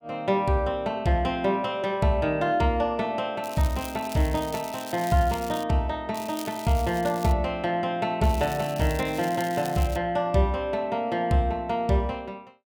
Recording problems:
crackling; from 3.5 to 5.5 s, from 6 to 7.5 s and from 8 to 10 s; loose cable, SNR 16 dB

